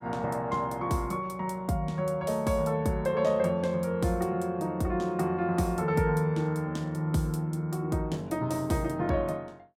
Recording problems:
none

